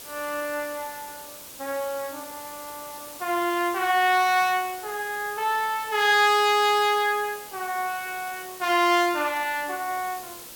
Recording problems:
background hiss; SNR 15 dB

